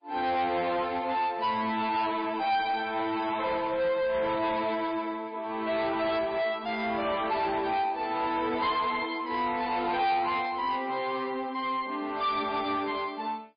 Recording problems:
lossy codec; MP3, log-spectral distance 3 dB, nothing above 4.6 kHz
distortion; soft clipping, signal-to-distortion ratio 10 dB

